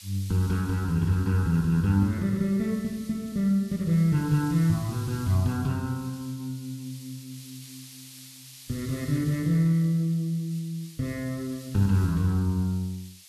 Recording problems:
background hiss; SNR 20 dB

